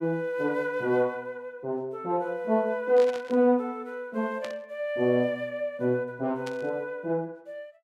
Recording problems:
static burst; at 3 s, at 4.5 s and at 6.5 s; peak -8 dB vs average level

